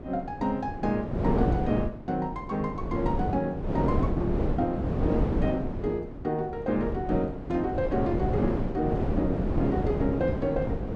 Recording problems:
wind on the microphone; below 380 Hz, SNR 0 dB

